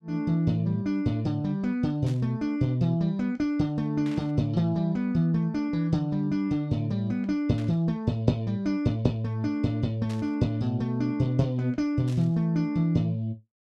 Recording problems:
burst of static; 5 times, first at 2 s; peak -14 dB vs average level

